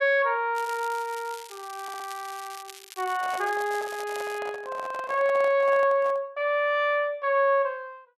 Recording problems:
crackle; from 0.5 to 4.5 s; loose cable, SNR 18 dB
stutter; at 2 s
microphone handling noise; from 3 to 6 s; peak -7 dB vs average level

